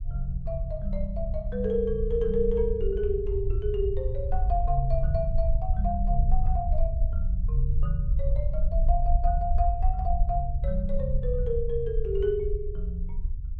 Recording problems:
low-frequency rumble; below 58 Hz, SNR -1 dB

